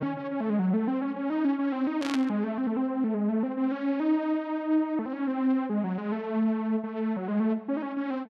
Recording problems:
static burst; at 2 s; peak -3 dB vs average level

